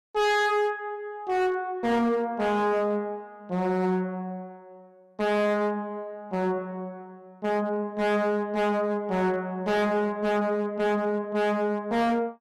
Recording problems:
distorted audio; hard clipping, signal-to-distortion ratio 7 dB

